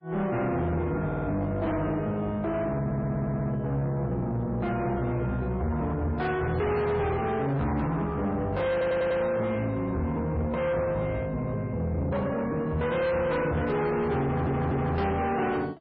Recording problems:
lossy codec; MP3, log-spectral distance 2 dB
distorted audio; soft clipping, signal-to-distortion ratio 8 dB
stutter; 4 times, first at 1 s

